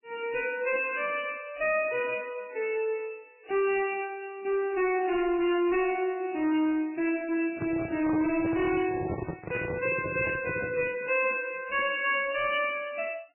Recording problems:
lossy codec; MP3, log-spectral distance 5 dB, nothing above 2.7 kHz
distortion; hard clipping, uneven, signal-to-distortion ratio 10 dB
handling noise; from 7.5 to 11 s; peak 0 dB vs average level

